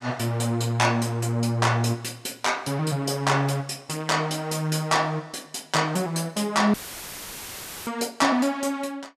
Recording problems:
audio cutting out; at 6.5 s for 1 s; filled with static

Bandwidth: 14.5 kHz